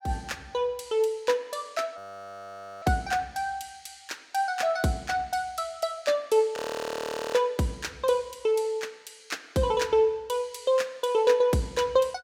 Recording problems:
frozen audio; at 2 s for 1 s and at 6.5 s for 1 s

